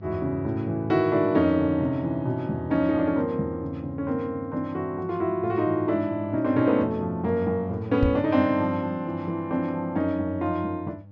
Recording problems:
treble cut off; nothing above 7.3 kHz
electrical hum; 50 Hz, harmonics up to 600 Hz, SNR 20 dB
microphone bump; at 8 s; peak +4 dB vs average level

